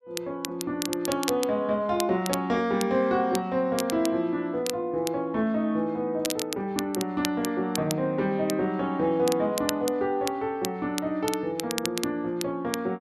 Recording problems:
crackle; vinyl, SNR 9 dB

